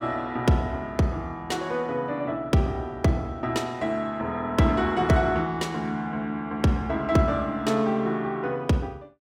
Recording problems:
none

